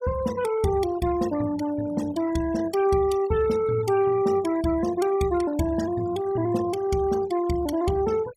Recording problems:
denoising artefacts; signal-to-artefact ratio 16 dB

